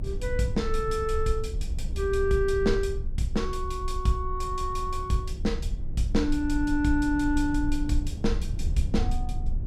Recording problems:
low-frequency rumble; below 68 Hz, strongest tone 24 Hz, SNR 5 dB

